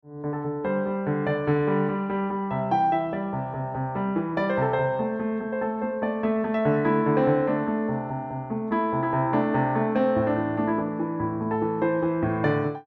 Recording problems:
none

